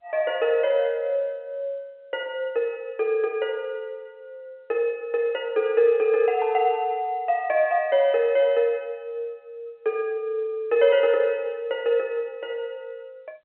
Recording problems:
telephone audio; 260 Hz to 3.4 kHz, G.711

